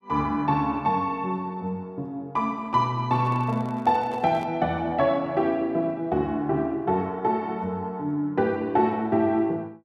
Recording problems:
microphone handling noise; from 3 to 4.5 s; peak -11 dB vs average level

